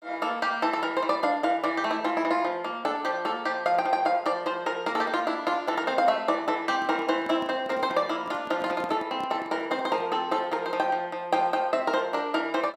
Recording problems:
microphone handling noise; from 6.5 to 10 s; peak -7 dB vs average level

